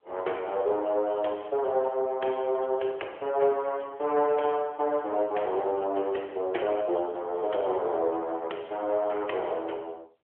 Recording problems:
telephone audio; 300 Hz to 3.6 kHz, AMR-NB

